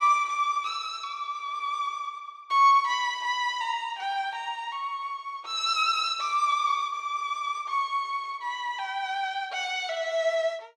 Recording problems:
none

